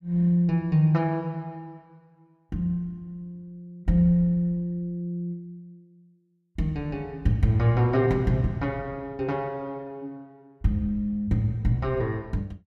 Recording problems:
none

